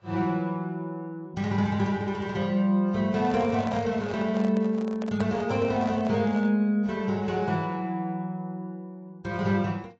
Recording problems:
lossy codec; AAC, log-spectral distance 2 dB
microphone handling noise; from 3 to 6.5 s; peak -5 dB vs average level

